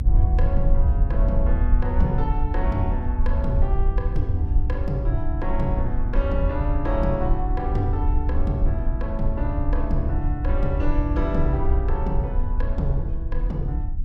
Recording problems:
rumble; below 66 Hz, SNR -4 dB

